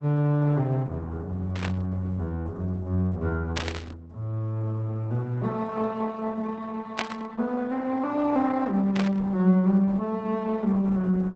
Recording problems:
lossy codec; Opus, log-spectral distance 2 dB
static burst; 4 times, first at 1.5 s; peak +2 dB vs average level

